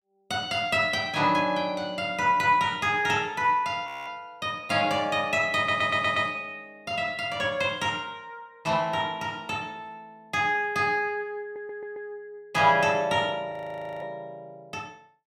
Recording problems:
audio freezing; at 4 s and at 14 s for 0.5 s
stutter; at 5.5 s and at 11 s

